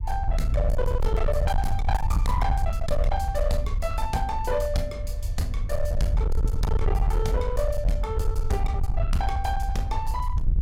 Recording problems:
distorted audio; hard clipping, signal-to-distortion ratio 7 dB
rumble; below 70 Hz, SNR -2 dB

